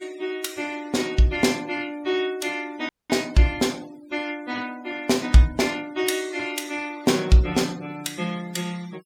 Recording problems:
noise reduction artefacts; signal-to-artefact ratio 23 dB
audio cutting out; at 3 s

